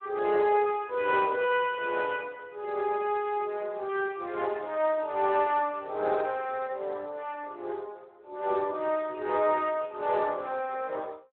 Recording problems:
phone line; 320 Hz to 3.4 kHz, Speex

